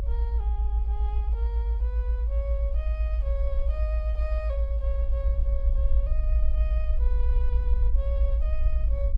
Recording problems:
low-frequency rumble; below 58 Hz, strongest tone 54 Hz, SNR -14 dB

